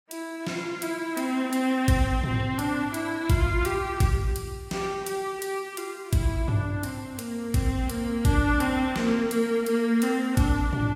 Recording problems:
lossy codec; Vorbis, log-spectral distance 3 dB, nothing above 16 kHz

